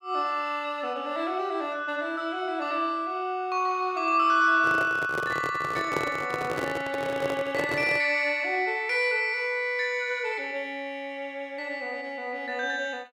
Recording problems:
microphone handling noise; from 4.5 to 8 s; peak +2 dB vs average level

